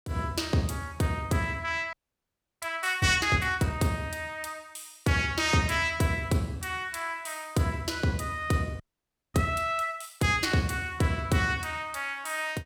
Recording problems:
frozen audio; at 2 s for 0.5 s and at 9 s for 0.5 s

